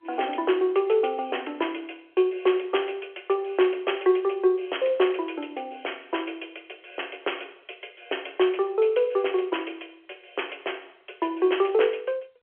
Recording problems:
telephone audio; 320 Hz to 3.3 kHz, G.711

